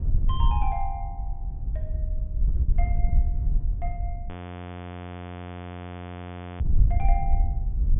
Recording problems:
treble cut off; nothing above 3.5 kHz
wind on the microphone; below 62 Hz, SNR -8 dB
audio freezing; at 4.5 s for 2.5 s

